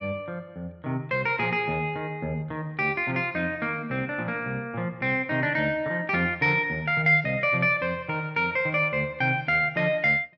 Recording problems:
none

